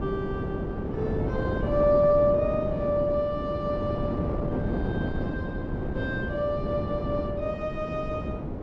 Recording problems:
wind on the microphone; below 400 Hz, SNR 3 dB

